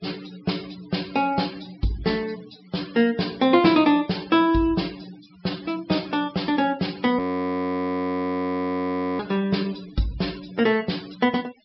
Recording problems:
low-pass filter; nothing above 5.5 kHz
denoising artefacts; signal-to-artefact ratio 21 dB
frozen audio; at 7 s for 2 s

